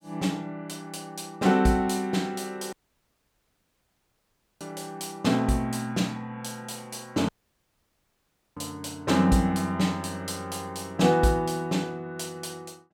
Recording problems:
dropout; at 2.5 s for 2 s and at 7.5 s for 1.5 s

